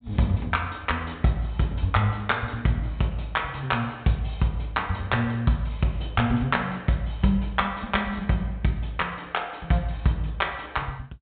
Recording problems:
treble missing; nothing above 4 kHz

